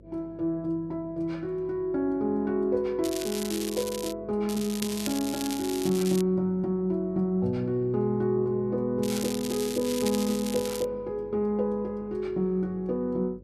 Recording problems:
hum; 50 Hz, harmonics up to 550 Hz, SNR 24 dB
crackling; from 3 to 4 s, from 4.5 to 6 s and from 9 to 11 s; loose cable, SNR 8 dB

